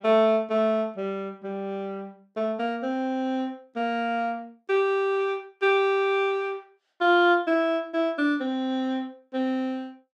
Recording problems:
none

